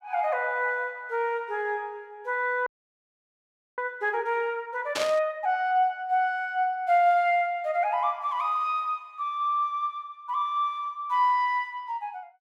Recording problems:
audio freezing; at 2.5 s for 1 s
burst of static; at 5 s; peak +1 dB vs average level

